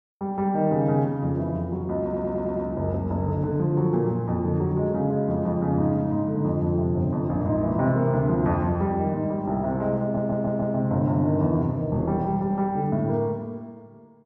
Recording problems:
audio stuttering; at 2 s and at 10 s

